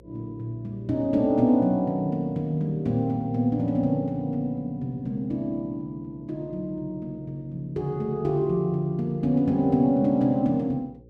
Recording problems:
hum; 60 Hz, harmonics up to 540 Hz, SNR 26 dB

